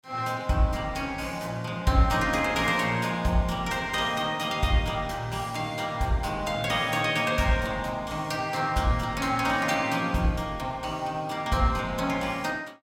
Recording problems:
none

